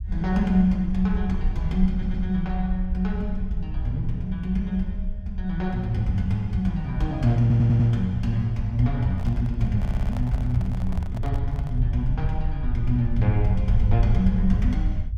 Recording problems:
rumble; below 68 Hz, SNR 6 dB
audio stuttering; at 2 s, at 7.5 s and at 10 s
handling noise; from 9 to 12 s; peak -10 dB vs average level

